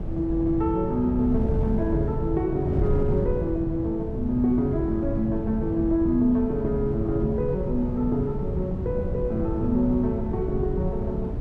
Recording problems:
wind on the microphone; below 170 Hz, SNR 5 dB

